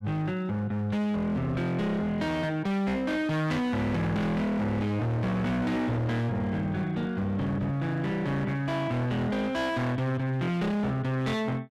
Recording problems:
distorted audio; hard clipping, signal-to-distortion ratio 6 dB

